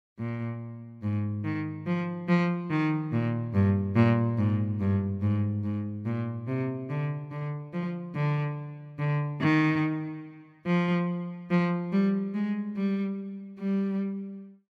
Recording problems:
none

